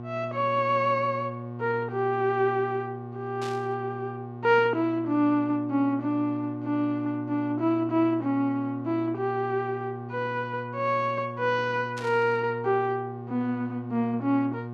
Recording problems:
hum; 60 Hz, harmonics up to 1.2 kHz, SNR 11 dB
burst of static; at 3.5 s and at 12 s; peak -9 dB vs average level

